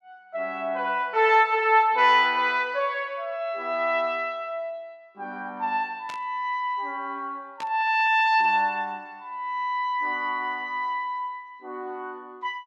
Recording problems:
burst of static; at 6 s and at 7.5 s; peak -11 dB vs average level

